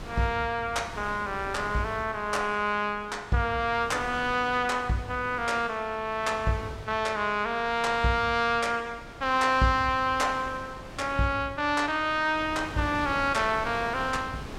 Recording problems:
wind on the microphone; below 1.1 kHz, SNR 16 dB

